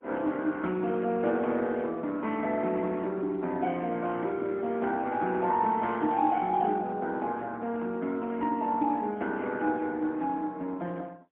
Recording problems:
phone line; 170 Hz to 3.4 kHz, AMR-NB, then MP3

